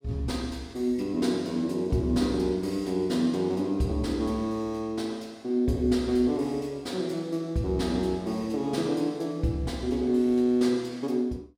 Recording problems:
none

